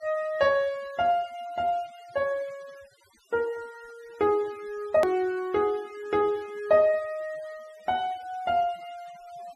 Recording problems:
noise reduction artefacts; signal-to-artefact ratio 26 dB
edit click; at 5 s

